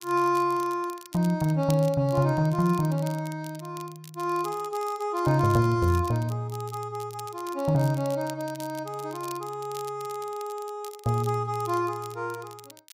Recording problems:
crackling; vinyl, SNR 19 dB

